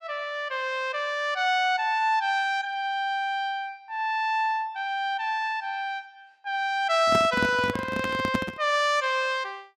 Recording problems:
microphone handling noise; from 7 to 8.5 s; peak +3 dB vs average level

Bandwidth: 14.5 kHz